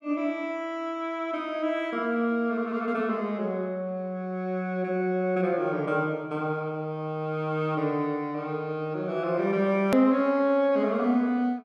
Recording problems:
hard cut with a click; at 10 s

